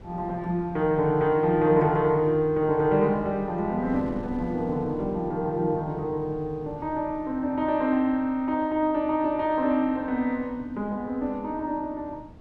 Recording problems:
wind on the microphone; below 310 Hz, SNR 20 dB

